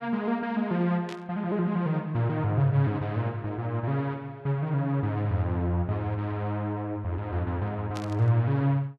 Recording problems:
burst of static; at 1 s and at 8 s; peak -9 dB vs average level

